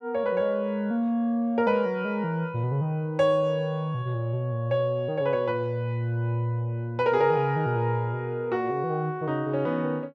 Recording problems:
none

